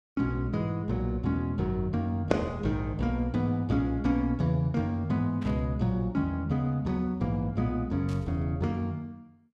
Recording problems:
static burst; at 5.5 s and at 8 s; peak -14 dB vs average level

